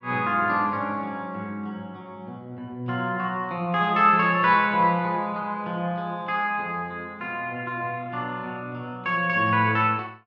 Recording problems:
none

